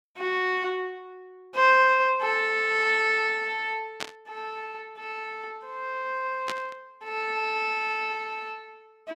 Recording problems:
burst of static; at 4 s and at 6.5 s; peak -3 dB vs average level

